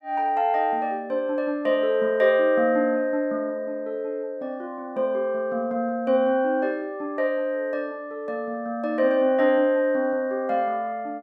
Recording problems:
none

